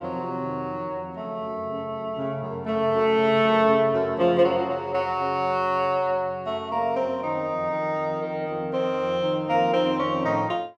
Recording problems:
none

